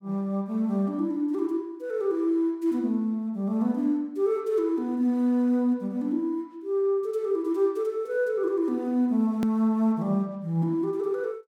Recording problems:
edit click; at 9.5 s

